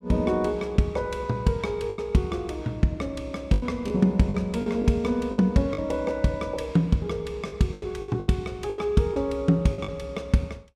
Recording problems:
packet loss; 8% of the sound replaced, filled with the last packet

